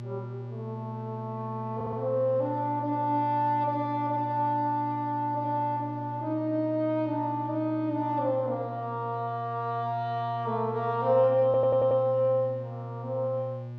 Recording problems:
hum; 60 Hz, harmonics up to 600 Hz, SNR 11 dB
stutter; at 2 s and at 11 s

